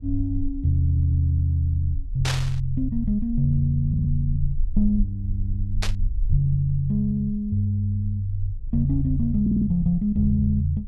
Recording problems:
rumble; below 44 Hz, strongest tone 18 Hz, SNR 10 dB
stutter; 4 times, first at 1 s
static burst; at 2.5 s and at 6 s; peak 0 dB vs average level

